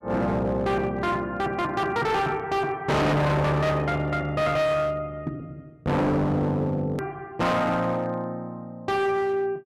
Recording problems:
distorted audio; hard clipping, uneven, signal-to-distortion ratio 6 dB
edit click; at 7 s

